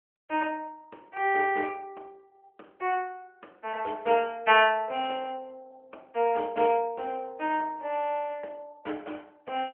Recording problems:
phone line; 320 Hz to 3.2 kHz, AMR-NB

